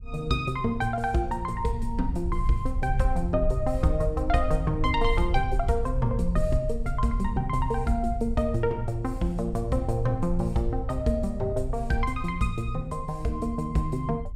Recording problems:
rumble; below 62 Hz, SNR 6 dB

